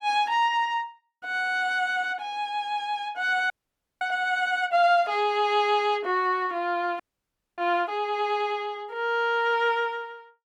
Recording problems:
audio freezing; at 3.5 s for 0.5 s and at 7 s for 0.5 s

